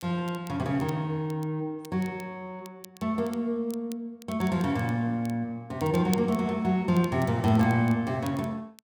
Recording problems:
crackle; vinyl, SNR 22 dB

